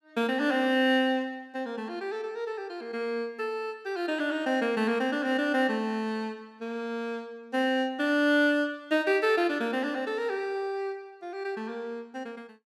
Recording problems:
none

